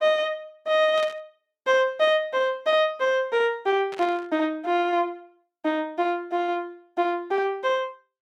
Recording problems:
static burst; at 1 s and at 4 s; peak -10 dB vs average level

